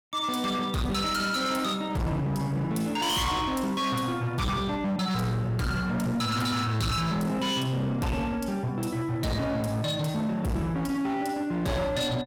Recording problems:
distorted audio; hard clipping, signal-to-distortion ratio 6 dB

